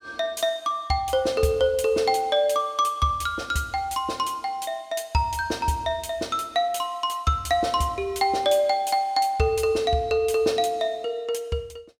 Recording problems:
none

